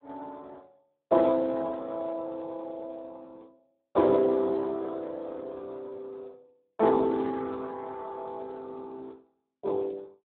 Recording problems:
telephone audio; 280 Hz to 2 kHz, Speex

